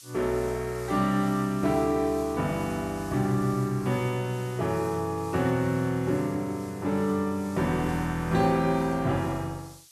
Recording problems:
hiss; SNR 21 dB

